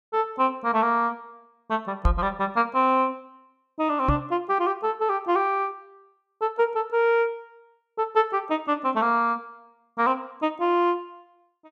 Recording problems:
microphone thump; at 2 s and at 4 s; peak +6 dB vs average level

